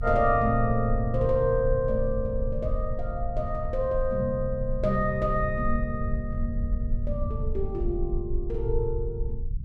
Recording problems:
rumble; below 66 Hz, SNR 5 dB

